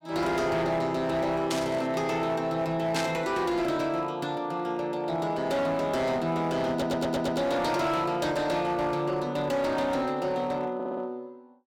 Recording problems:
distortion; hard clipping, signal-to-distortion ratio 11 dB
static burst; at 1.5 s and at 3 s; peak +1 dB vs average level
stutter; at 6.5 s and at 11 s

